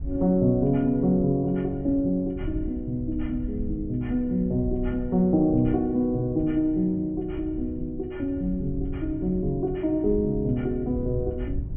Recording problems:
treble missing; nothing above 3.3 kHz
wind noise; below 94 Hz, SNR 12 dB

